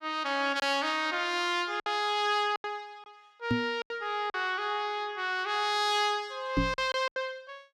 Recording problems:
lost packets; 6% of the sound replaced, filled with silence
knock on the microphone; at 3.5 s and at 6.5 s; peak +5 dB vs average level

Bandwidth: 16 kHz